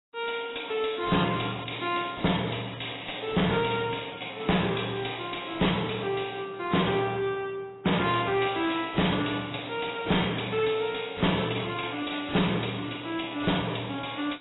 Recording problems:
codec artefacts; AAC, then AAC, log-spectral distance 12 dB, nothing above 3.9 kHz
distorted audio; hard clipping, uneven, signal-to-distortion ratio 11 dB

